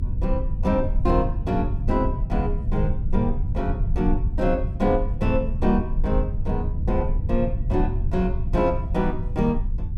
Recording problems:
rumble; below 84 Hz, SNR 1 dB

